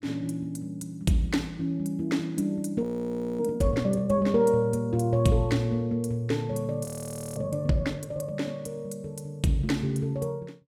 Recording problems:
frozen audio; at 3 s for 0.5 s and at 7 s for 0.5 s

